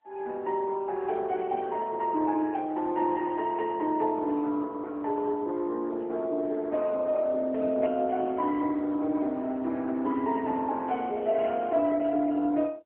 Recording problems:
phone line; 240 Hz to 3.6 kHz, AMR-NB

